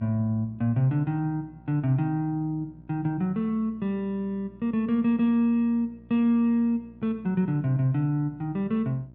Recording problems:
hum; 60 Hz, harmonics up to 720 Hz, SNR 25 dB

